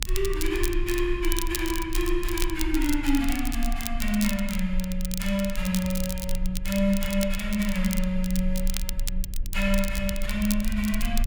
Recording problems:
rumble; below 38 Hz, strongest tone 26 Hz, SNR 6 dB
crackle; vinyl, SNR 8 dB

